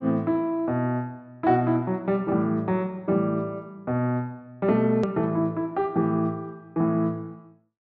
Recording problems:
low-pass filter; nothing above 8 kHz
hard cut with a click; at 5 s

